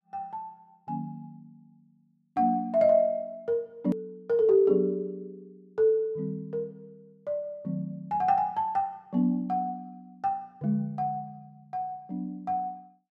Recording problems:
hard cut with a click; at 4 s

